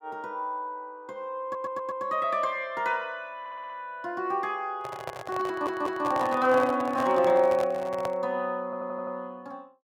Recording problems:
stutter; 4 times, first at 1.5 s
microphone handling noise; from 5 to 8 s; peak -2 dB vs average level

